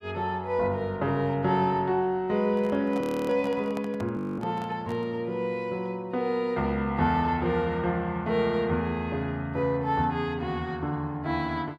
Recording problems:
handling noise; from 2.5 to 5 s; peak -7 dB vs average level
frozen audio; at 3 s and at 4 s

